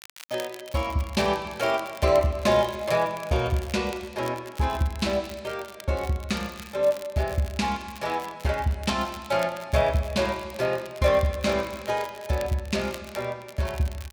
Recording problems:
crackling; vinyl, SNR 19 dB

